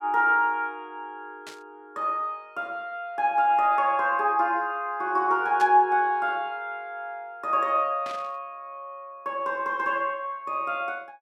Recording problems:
static burst; at 1.5 s, at 5.5 s and at 8 s; peak -10 dB vs average level

